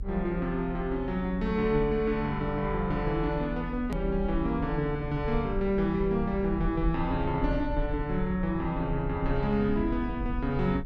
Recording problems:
rumble; below 60 Hz, strongest tone 38 Hz, SNR 8 dB
click at an edit; at 4 s

